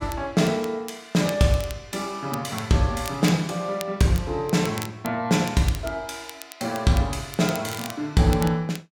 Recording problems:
crackle; vinyl, SNR 16 dB

